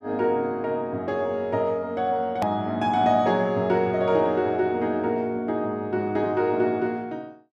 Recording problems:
edit click; at 2.5 s

